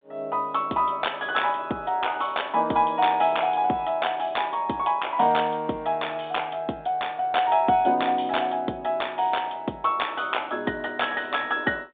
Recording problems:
telephone audio; 240 Hz to 3.7 kHz, G.726

